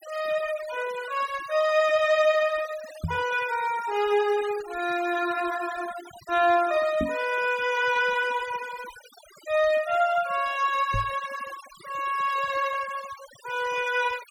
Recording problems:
denoising artefacts; signal-to-artefact ratio 17 dB
microphone thump; at 3 s, at 7 s and at 11 s; peak -1 dB vs average level

